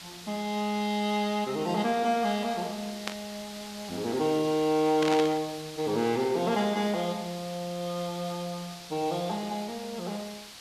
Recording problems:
background hiss; slope +1 dB per octave, SNR 13 dB
static burst; at 3 s and at 5 s; peak +1 dB vs average level

